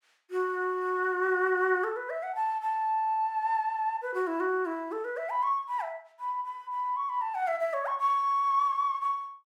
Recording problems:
none

